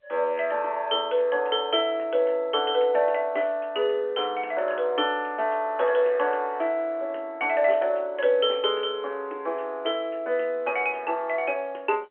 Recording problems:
telephone audio; 280 Hz to 3.2 kHz, G.711

